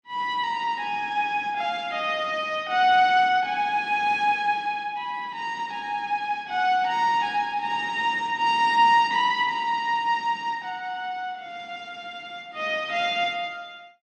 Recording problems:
lossy compression; AAC, log-spectral distance 2 dB

